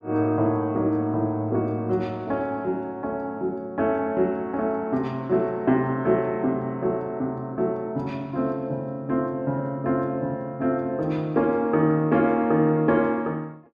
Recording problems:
none

